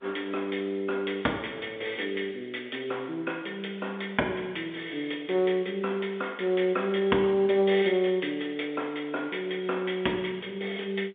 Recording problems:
phone line; 260 Hz to 3.6 kHz, G.711

